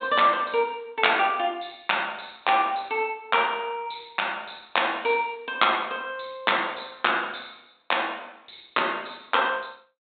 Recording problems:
treble missing; nothing above 4 kHz

